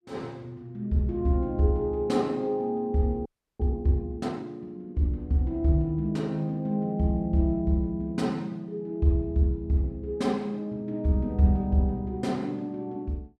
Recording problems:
audio freezing; at 3.5 s

